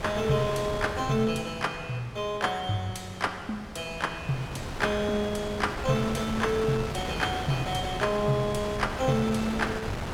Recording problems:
wind on the microphone; below 1.3 kHz, SNR 7 dB

